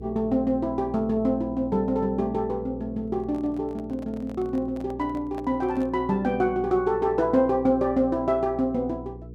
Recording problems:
hum; 60 Hz, harmonics up to 480 Hz, SNR 16 dB
handling noise; from 3 to 6 s; peak -11 dB vs average level

